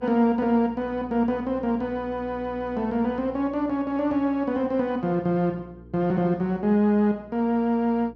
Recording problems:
hum; 60 Hz, harmonics up to 480 Hz, SNR 23 dB

